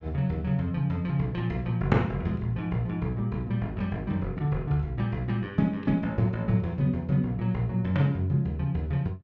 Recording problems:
none

